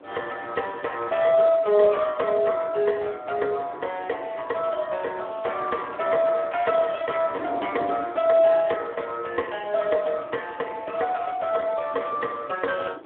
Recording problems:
telephone audio; 260 Hz to 3.4 kHz, Speex
wind on the microphone; below 620 Hz, SNR 19 dB

